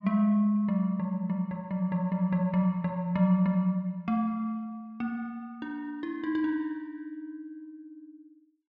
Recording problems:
none

